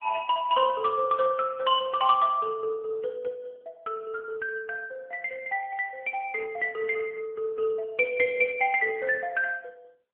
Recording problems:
phone line; 240 Hz to 3.2 kHz, AMR-NB

